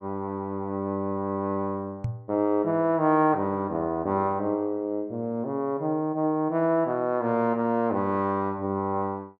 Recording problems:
microphone bump; at 2 s; peak +1 dB vs average level

